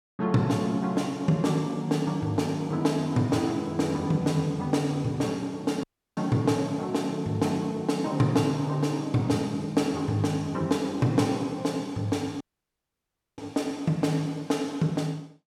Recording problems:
dropout; at 6 s and at 12 s for 1 s

